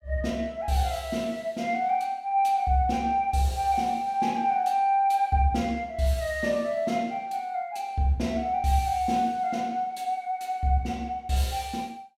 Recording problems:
none

